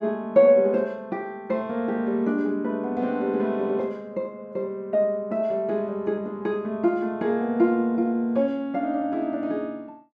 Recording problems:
none

